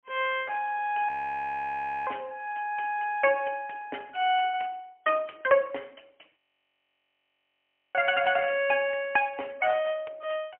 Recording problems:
telephone audio; 280 Hz to 3.2 kHz, AMR-NB, then MP3
frozen audio; at 1 s for 1 s and at 6.5 s for 1.5 s

